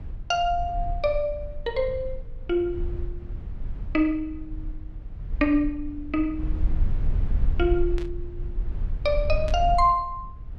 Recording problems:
low-frequency rumble; below 58 Hz, SNR 7 dB
burst of static; at 8 s and at 9.5 s; peak -11 dB vs average level

